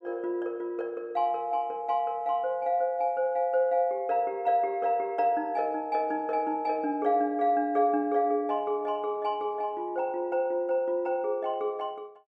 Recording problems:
none

